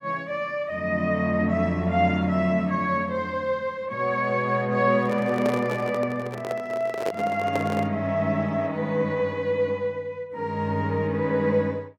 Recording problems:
handling noise; from 5 to 8 s; peak -1 dB vs average level

